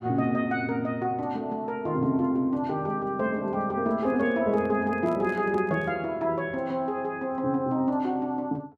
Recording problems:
microphone handling noise; from 4 to 6 s; peak -13 dB vs average level

